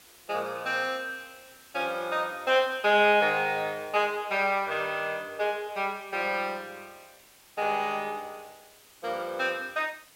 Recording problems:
hiss; slope 0 dB per octave, SNR 25 dB

